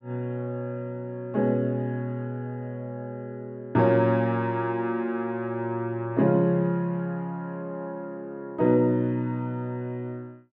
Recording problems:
none

